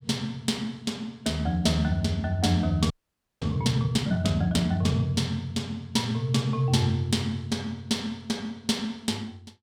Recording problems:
frozen audio; at 3 s for 0.5 s

